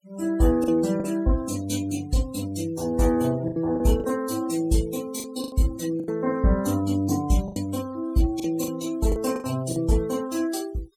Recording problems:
noise reduction artefacts; signal-to-artefact ratio 18 dB
lost packets; 7% of the sound replaced, filled with the last packet

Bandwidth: 18 kHz